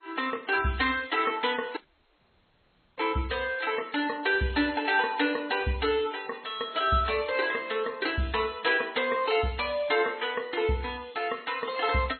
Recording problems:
lossy codec; MP3, then MP2, log-spectral distance 6 dB, nothing above 4.2 kHz
dropout; at 2 s for 1 s

